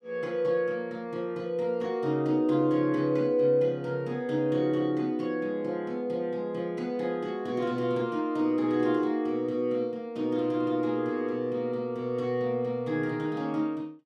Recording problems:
none

